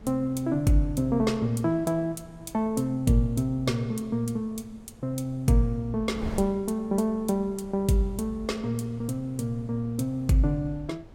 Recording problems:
wind noise; below 240 Hz, SNR 20 dB

